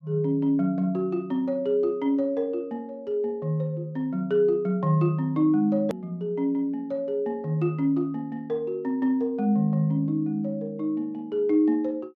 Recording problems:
hard cut with a click; at 6 s

